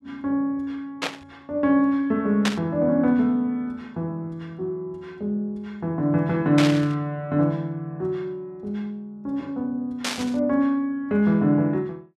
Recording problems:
burst of static; 4 times, first at 1 s; peak +3 dB vs average level

